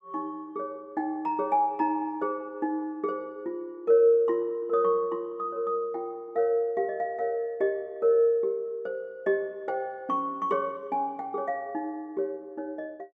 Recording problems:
none

